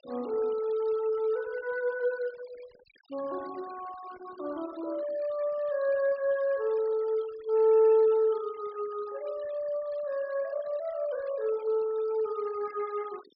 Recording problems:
low-pass filter; nothing above 5 kHz
denoising artefacts; signal-to-artefact ratio 24 dB

